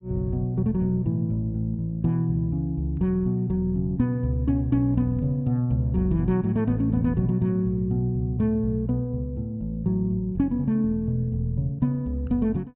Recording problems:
low-pass filter; nothing above 4 kHz

